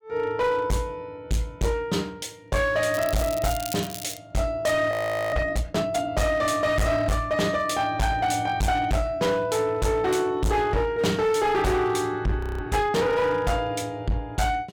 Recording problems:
distorted audio; hard clipping, signal-to-distortion ratio 8 dB
crackling; from 3 to 4 s; loose cable, SNR 11 dB
audio freezing; at 5 s and at 12 s

